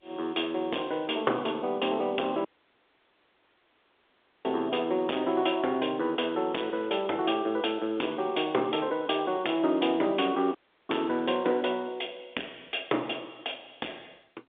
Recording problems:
telephone audio; 240 Hz to 3.6 kHz, G.711
distortion; soft clipping, signal-to-distortion ratio 12 dB
audio cutting out; at 2.5 s for 2 s and at 11 s

